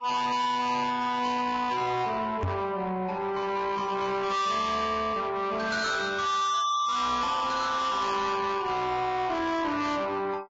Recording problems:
lossy compression; Vorbis, log-spectral distance 3 dB
distortion; soft clipping, signal-to-distortion ratio 7 dB
knock on the microphone; at 2.5 s; peak +1 dB vs average level

